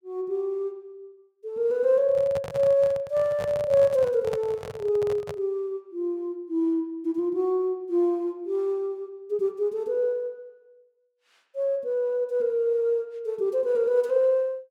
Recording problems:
handling noise; from 2 to 5.5 s; peak -6 dB vs average level

